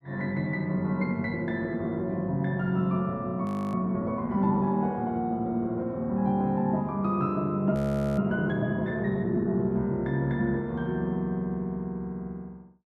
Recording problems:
audio freezing; at 3.5 s and at 8 s

